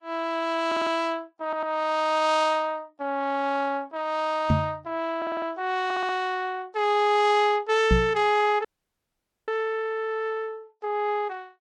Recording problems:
lossy compression; Vorbis, log-spectral distance 2 dB
stutter; 4 times, first at 0.5 s
microphone thump; at 4.5 s and at 8 s; peak +7 dB vs average level
audio cutting out; at 8.5 s for 1 s

